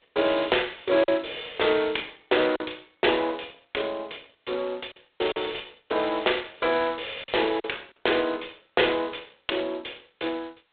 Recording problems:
telephone audio; 300 Hz to 3.8 kHz, G.726
lost packets; 4% of the sound replaced, filled with silence

